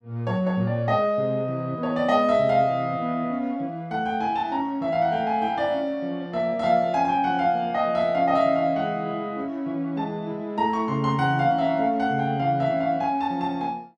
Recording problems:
none

